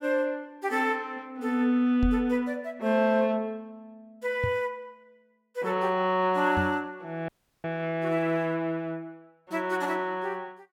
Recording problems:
microphone bump; at 2 s, at 4.5 s and at 6.5 s; peak +1 dB vs average level
audio cutting out; at 7.5 s

